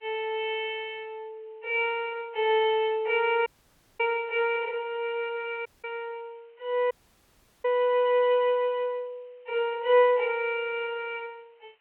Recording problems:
phone line; 260 Hz to 3.2 kHz, G.726
hiss; SNR 41 dB
audio cutting out; at 3.5 s for 0.5 s, at 5.5 s and at 7 s for 0.5 s

